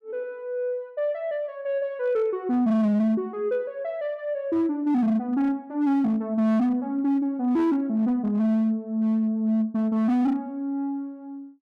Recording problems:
distorted audio; hard clipping, signal-to-distortion ratio 11 dB

